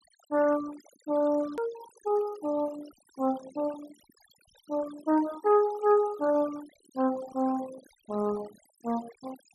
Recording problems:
noise reduction artefacts; signal-to-artefact ratio 19 dB
hard cut with a click; at 1.5 s

